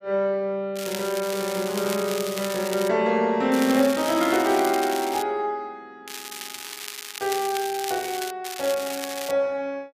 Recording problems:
crackling; 4 times, first at 1 s; loose cable, SNR 9 dB

